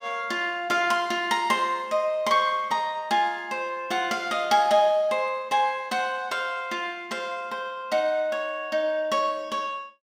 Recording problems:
none

